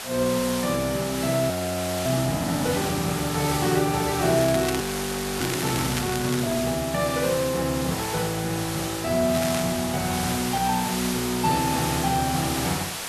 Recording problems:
background hiss; SNR 5 dB
audio freezing; at 1.5 s for 0.5 s and at 5 s for 0.5 s
crackling; from 4.5 to 6.5 s and at 9.5 s; loose cable, SNR 10 dB

